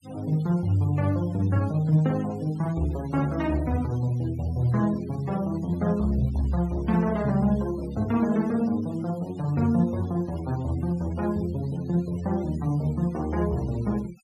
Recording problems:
noise reduction artefacts; signal-to-artefact ratio 23 dB

